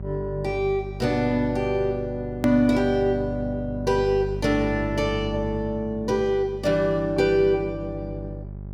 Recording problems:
hum; 50 Hz, harmonics up to 600 Hz, SNR 11 dB
click at an edit; at 2.5 s

